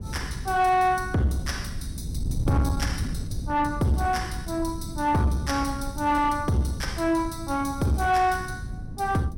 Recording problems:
distorted audio; soft clipping, signal-to-distortion ratio 11 dB
wind on the microphone; below 150 Hz, SNR 9 dB

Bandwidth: 16.5 kHz